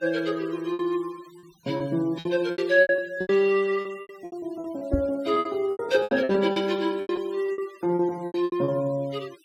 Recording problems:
noise reduction artefacts; signal-to-artefact ratio 24 dB
lost packets; 16% of the sound replaced, filled with repeated pitch periods
knock on the microphone; at 5 s; peak +4 dB vs average level

